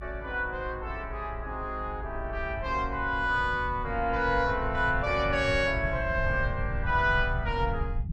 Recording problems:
rumble; below 110 Hz, SNR 7 dB

